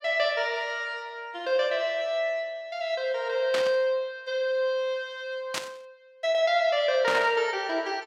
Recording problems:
static burst; at 3.5 s, at 5.5 s and at 7 s; peak 0 dB vs average level

